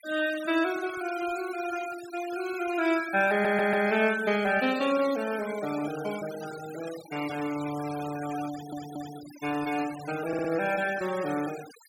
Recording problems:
noise reduction artefacts; signal-to-artefact ratio 14 dB
audio stuttering; at 3.5 s, at 8.5 s and at 10 s

